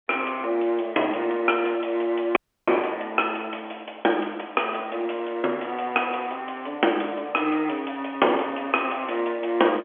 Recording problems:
telephone audio; 260 Hz to 3.4 kHz, G.711
dropout; at 2.5 s

